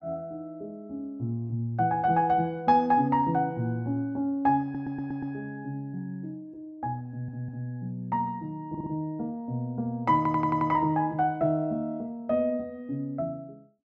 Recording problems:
audio stuttering; 4 times, first at 4.5 s

